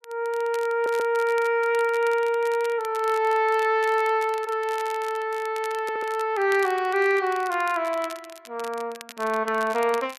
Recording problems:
crackle; vinyl, SNR 20 dB
audio stuttering; at 0.5 s and at 6 s

